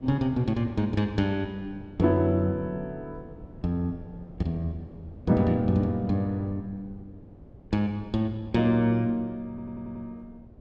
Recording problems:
wind noise; below 270 Hz, SNR 20 dB
stutter; at 9.5 s

